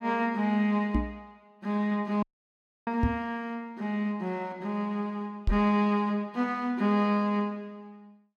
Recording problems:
knock on the microphone; at 1 s, at 3 s and at 5.5 s; peak +5 dB vs average level
audio cutting out; at 2 s for 0.5 s

